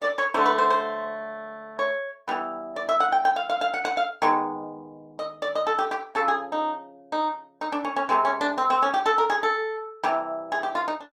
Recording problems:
lossy compression; Opus, log-spectral distance 2 dB

